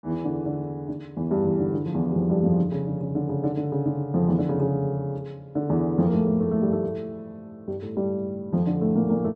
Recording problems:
none

